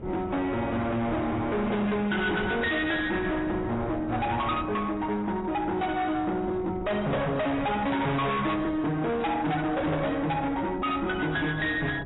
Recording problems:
codec artefacts; AAC, log-spectral distance 3 dB, nothing above 3.8 kHz
distorted audio; hard clipping, signal-to-distortion ratio 6 dB
wind on the microphone; below 470 Hz, SNR 13 dB

